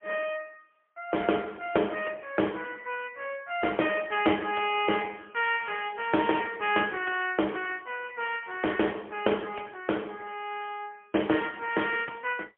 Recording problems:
telephone audio; 260 Hz to 3.3 kHz, AMR-NB, then MP3

